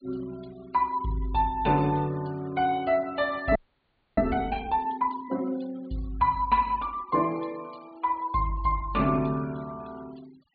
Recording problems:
treble missing; nothing above 4.6 kHz
noise reduction artefacts; signal-to-artefact ratio 23 dB
frozen audio; at 3.5 s for 0.5 s

